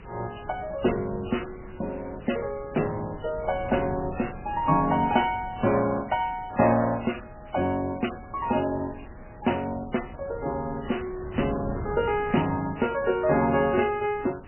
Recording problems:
lossy compression; MP3, log-spectral distance 10 dB, nothing above 2.9 kHz
hiss; SNR 28 dB
wind noise; below 410 Hz, SNR 15 dB

